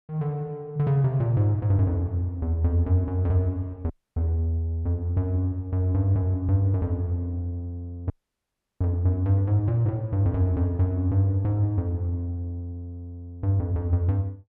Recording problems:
audio freezing; at 4 s and at 8 s for 0.5 s

